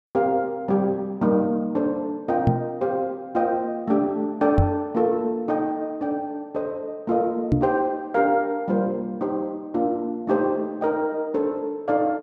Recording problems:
microphone thump; at 2.5 s, at 4.5 s and at 7.5 s; peak +8 dB vs average level

